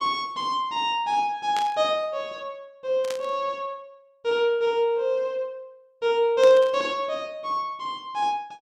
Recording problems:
burst of static; at 1.5 s, at 3 s and at 6.5 s; peak -6 dB vs average level

